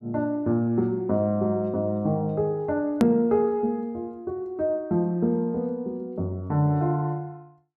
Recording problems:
click at an edit; at 3 s

